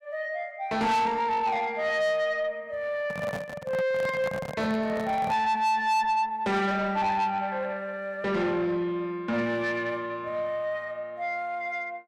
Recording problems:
distortion; soft clipping, signal-to-distortion ratio 8 dB
microphone handling noise; from 3 to 5.5 s; peak -4 dB vs average level

